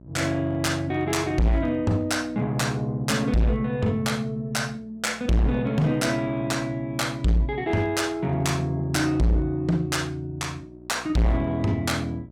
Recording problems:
distorted audio; hard clipping, signal-to-distortion ratio 6 dB
electrical hum; 60 Hz, harmonics up to 960 Hz, SNR 24 dB

